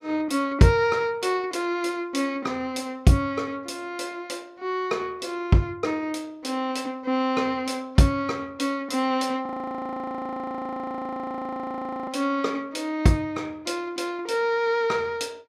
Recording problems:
audio freezing; at 9.5 s for 2.5 s

